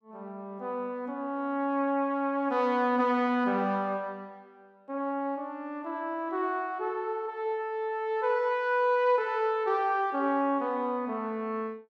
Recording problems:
none

